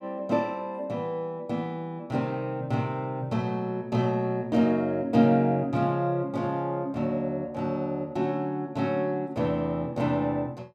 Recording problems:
none

